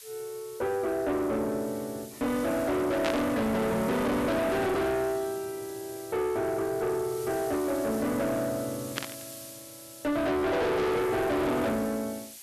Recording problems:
distorted audio; soft clipping, signal-to-distortion ratio 6 dB
background hiss; SNR 15 dB
static burst; at 3 s and at 9 s; peak +1 dB vs average level

